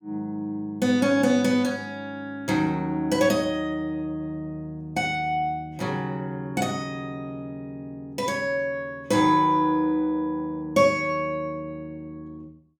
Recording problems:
none

